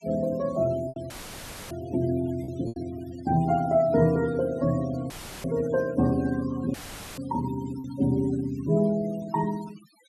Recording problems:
denoising artefacts; signal-to-artefact ratio 19 dB
lost packets; 2% of the sound replaced, filled with repeated pitch periods
audio cutting out; at 1 s for 0.5 s, at 5 s and at 6.5 s; filled with static

